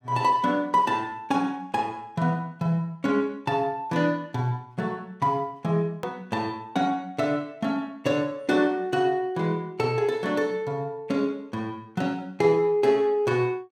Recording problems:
edit click; at 6 s

